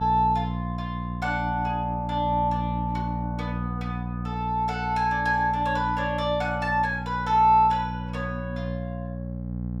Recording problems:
hum; 60 Hz, harmonics up to 540 Hz, SNR 6 dB

